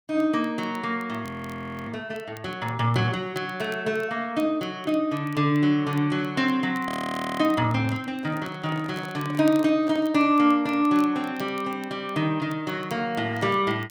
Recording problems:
crackling; vinyl, SNR 26 dB
audio freezing; at 1.5 s for 0.5 s and at 7 s for 0.5 s
handling noise; from 8 to 10 s; peak -11 dB vs average level

